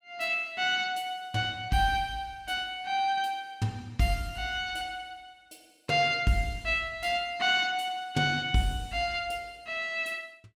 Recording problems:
none

